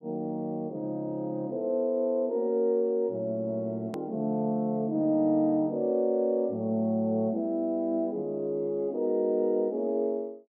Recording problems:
edit click; at 4 s

